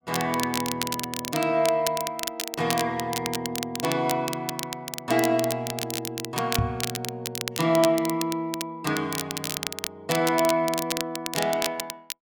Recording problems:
crackle; vinyl, SNR 5 dB
microphone bump; at 6.5 s; peak +5 dB vs average level

